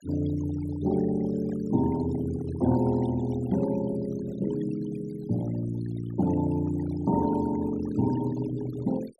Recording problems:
noise reduction artefacts; signal-to-artefact ratio 17 dB

